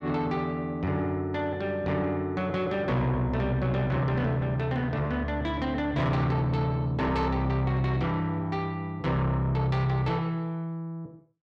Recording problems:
distortion; soft clipping, signal-to-distortion ratio 11 dB

